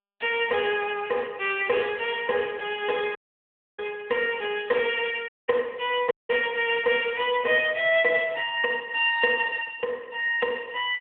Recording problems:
phone line; 240 Hz to 3.4 kHz, AMR-NB
audio cutting out; at 3 s for 0.5 s, at 5.5 s and at 6 s

